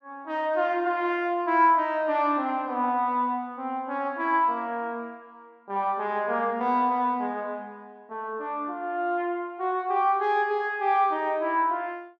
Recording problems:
none

